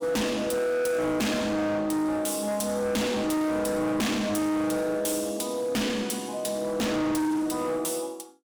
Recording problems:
distortion; hard clipping, signal-to-distortion ratio 6 dB

